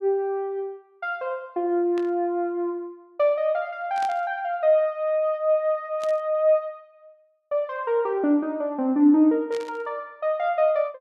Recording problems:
burst of static; 4 times, first at 2 s; peak -12 dB vs average level

